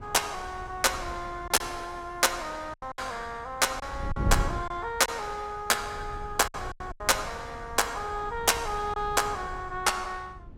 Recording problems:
wind on the microphone; below 130 Hz, SNR 11 dB
lost packets; 5% of the sound replaced, filled with silence

